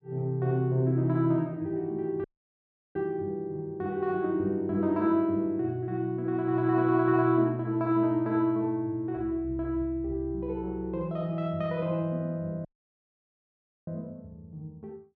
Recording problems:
dropout; at 2 s for 0.5 s and at 13 s for 1 s

